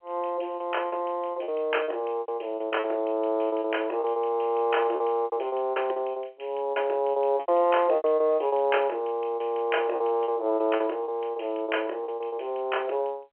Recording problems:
phone line; 320 Hz to 3.2 kHz, G.711
packet loss; 13% of the sound replaced, filled with repeated pitch periods

